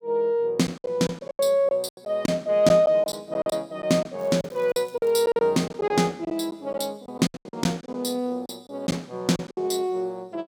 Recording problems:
packet loss; 12% of the sound replaced, filled with silence
crackling; at 4 s; loose cable, SNR 29 dB

